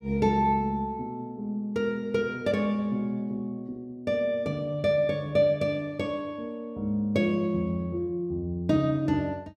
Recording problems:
none

